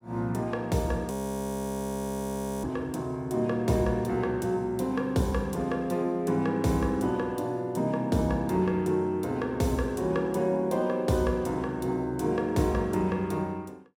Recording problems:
frozen audio; at 1 s for 1.5 s

